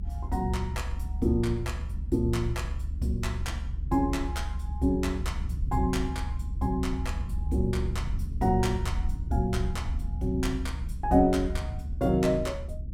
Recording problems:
low-frequency rumble; below 72 Hz, SNR 4 dB

